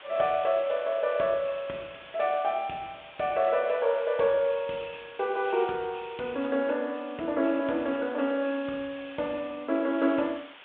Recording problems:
telephone audio; 300 Hz to 3.7 kHz, G.726
background hiss; SNR 20 dB

